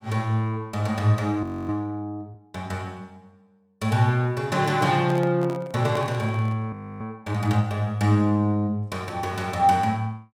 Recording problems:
frozen audio; at 1.5 s and at 6.5 s
handling noise; from 4.5 to 6.5 s; peak -6 dB vs average level

